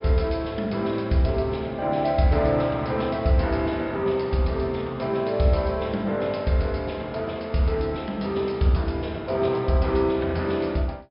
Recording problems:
treble cut off; nothing above 5.5 kHz

